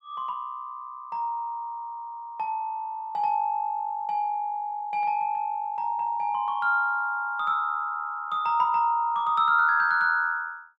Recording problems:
none

